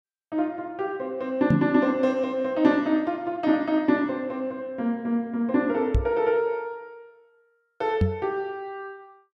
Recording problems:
microphone bump; at 1.5 s, at 6 s and at 8 s; peak +7 dB vs average level

